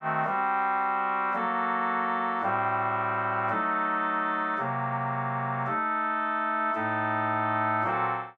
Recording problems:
none

